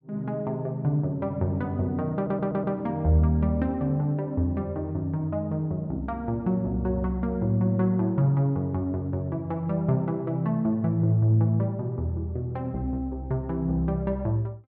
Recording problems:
audio stuttering; at 2 s

